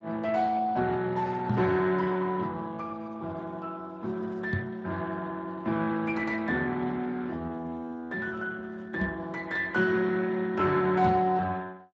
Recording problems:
lossy compression; Speex, log-spectral distance 3 dB, nothing above 7.3 kHz
knock on the microphone; 4 times, first at 1.5 s; peak +5 dB vs average level

